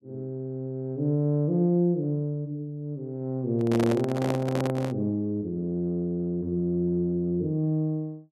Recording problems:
handling noise; from 3.5 to 5 s; peak +1 dB vs average level

